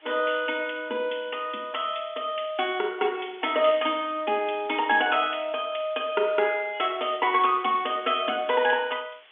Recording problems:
telephone audio; 220 Hz to 3.5 kHz, G.711
background hiss; SNR 27 dB

